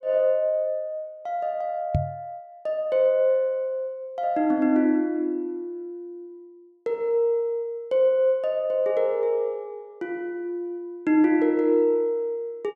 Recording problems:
knock on the microphone; at 2 s; peak +4 dB vs average level

